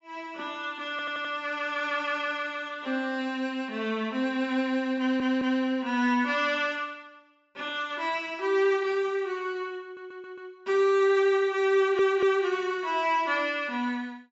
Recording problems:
treble missing; nothing above 8 kHz
audio stuttering; 4 times, first at 1 s

